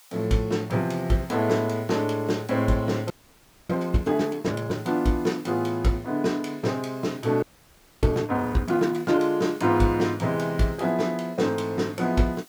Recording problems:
background hiss; SNR 26 dB
audio freezing; at 3 s for 0.5 s and at 7.5 s for 0.5 s

